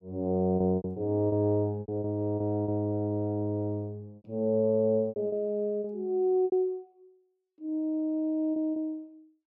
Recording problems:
lost packets; 9% of the sound replaced, filled with repeated pitch periods

